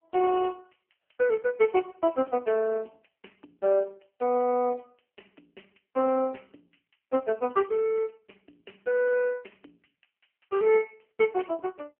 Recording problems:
phone line; 240 Hz to 2.6 kHz, AMR-NB

